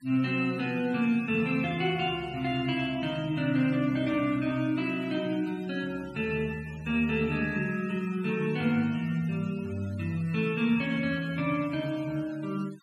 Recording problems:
denoising artefacts; signal-to-artefact ratio 22 dB

